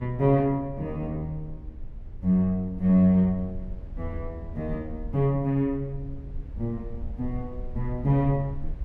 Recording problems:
low-frequency rumble; below 70 Hz, SNR 14 dB

